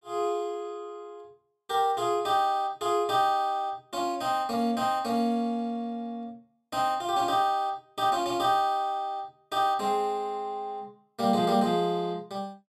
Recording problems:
none

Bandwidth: 15 kHz